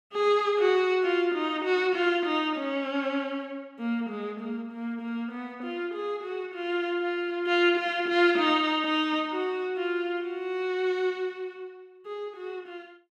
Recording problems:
none

